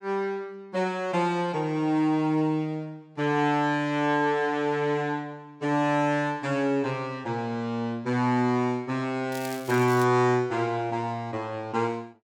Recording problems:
crackle; at 9.5 s; loose cable, SNR 17 dB

